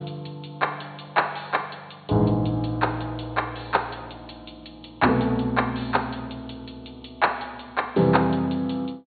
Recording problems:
treble missing; nothing above 4.4 kHz

